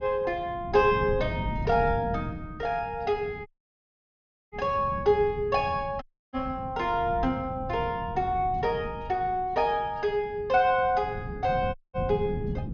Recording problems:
treble missing; nothing above 6.6 kHz
wind on the microphone; below 190 Hz, SNR 10 dB
dropout; at 3.5 s for 1 s, at 6 s and at 12 s

